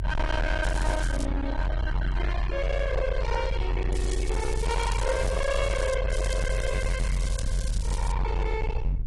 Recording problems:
lossy codec; AAC, log-spectral distance 3 dB, nothing above 10.4 kHz
distortion; hard clipping, signal-to-distortion ratio 7 dB
rumble; below 94 Hz, strongest tone 46 Hz, SNR -1 dB
crackling; at 0.5 s, from 4 to 6 s and from 6 to 8 s; loose cable, SNR 12 dB

